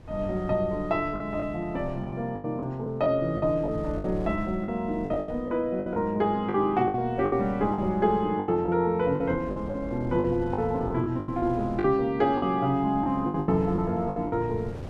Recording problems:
wind noise; below 160 Hz, SNR 17 dB
lost packets; 11% of the sound replaced, filled with the last packet

